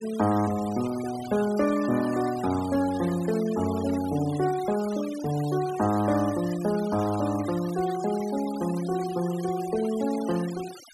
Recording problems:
denoising artefacts; signal-to-artefact ratio 16 dB

